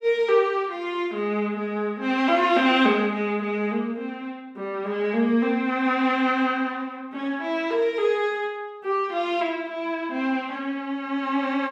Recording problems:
none

